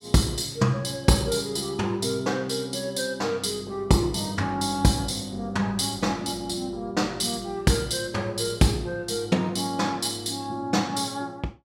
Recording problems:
none

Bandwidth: 16 kHz